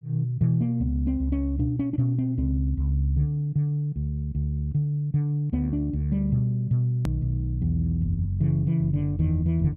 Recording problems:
click at an edit; at 7 s

